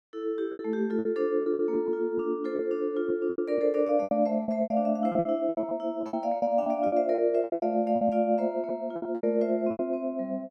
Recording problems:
lost packets; 15% of the sound replaced, filled with repeated pitch periods

